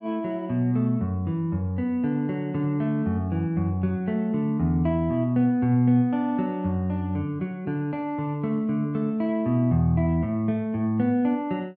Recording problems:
none

